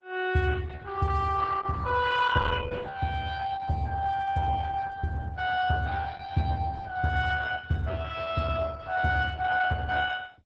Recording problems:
lossy codec; Opus, log-spectral distance 4 dB, nothing above 7.8 kHz

